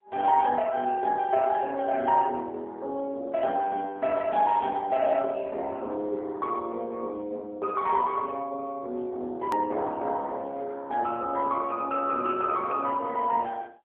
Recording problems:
telephone audio; 300 Hz to 3.3 kHz, AMR-NB
hard cut with a click; at 9.5 s

